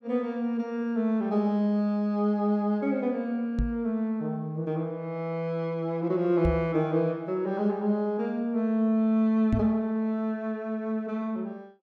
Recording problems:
microphone thump; at 3.5 s, at 6.5 s and at 9.5 s; peak +4 dB vs average level

